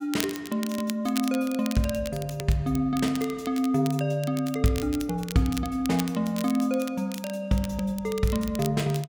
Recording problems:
crackle; vinyl, SNR 13 dB

